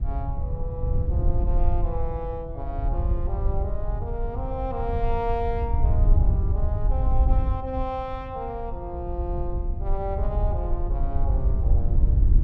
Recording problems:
low-frequency rumble; below 110 Hz, SNR 7 dB
wind noise; below 72 Hz, SNR -6 dB

